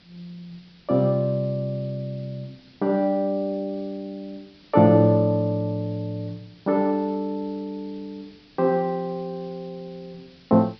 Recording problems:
low-pass filter; nothing above 5.5 kHz
background hiss; SNR 29 dB

